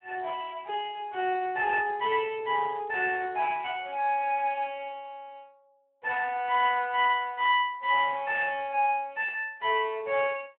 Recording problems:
phone line; 300 Hz to 3.3 kHz, Speex

